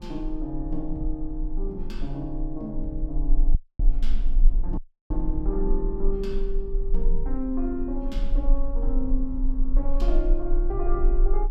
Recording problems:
low-frequency rumble; below 32 Hz, strongest tone 26 Hz, SNR -3 dB
wind on the microphone; below 160 Hz, SNR 11 dB
dropout; at 3.5 s and at 5 s

